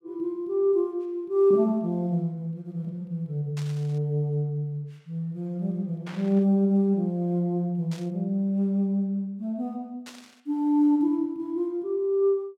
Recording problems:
burst of static; 4 times, first at 3.5 s; peak -12 dB vs average level

